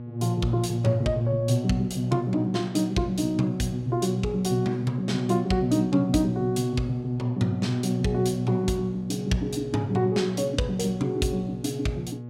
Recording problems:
hum; 60 Hz, harmonics up to 840 Hz, SNR 12 dB

